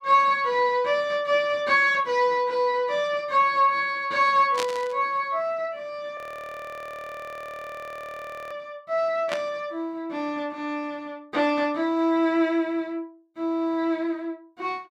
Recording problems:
static burst; at 4.5 s and at 9.5 s; peak -2 dB vs average level
frozen audio; at 6 s for 2.5 s

